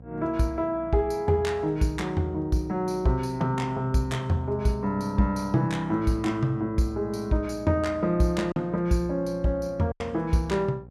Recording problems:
electrical hum; 60 Hz, harmonics up to 840 Hz, SNR 20 dB
packet loss; 1.1% of the sound replaced, filled with silence

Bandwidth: 15.5 kHz